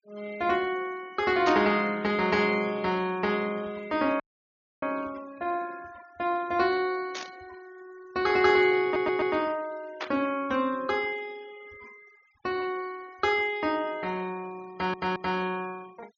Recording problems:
treble cut off; nothing above 6.8 kHz
denoising artefacts; signal-to-artefact ratio 23 dB
burst of static; at 1.5 s, at 7 s and at 10 s; peak -2 dB vs average level
audio cutting out; at 4 s for 0.5 s
stutter; at 9 s and at 15 s

